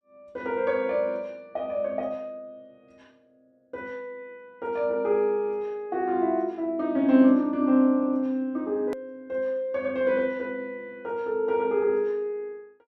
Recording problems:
edit click; at 9 s

